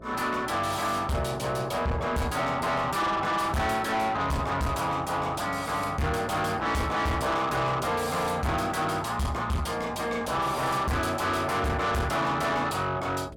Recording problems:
distortion; soft clipping, signal-to-distortion ratio 7 dB
electrical hum; 60 Hz, harmonics up to 660 Hz, SNR 20 dB

